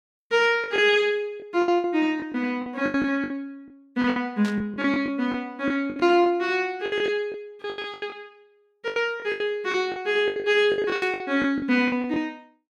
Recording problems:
packet loss; 16% of the sound replaced, filled with the last packet
burst of static; at 4.5 s and at 11 s; peak -8 dB vs average level

